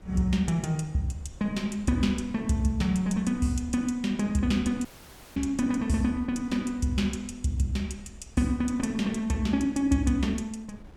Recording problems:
wind noise; below 160 Hz, SNR 22 dB
audio cutting out; at 5 s for 0.5 s

